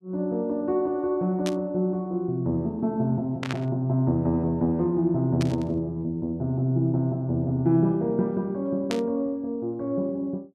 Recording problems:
static burst; 4 times, first at 1.5 s; peak -2 dB vs average level

